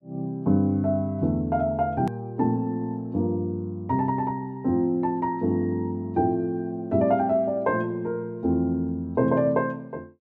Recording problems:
hard cut with a click; at 2 s

